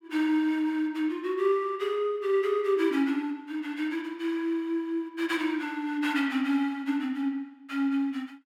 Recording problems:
none

